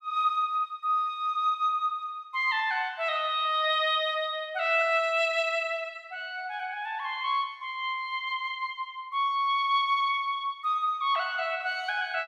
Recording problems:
none

